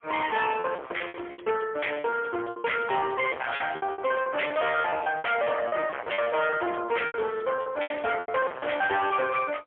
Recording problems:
phone line; 320 Hz to 3.4 kHz, AMR-NB, then MP3
distortion; hard clipping, uneven, signal-to-distortion ratio 3 dB
packet loss; 17% of the sound replaced, filled with repeated pitch periods

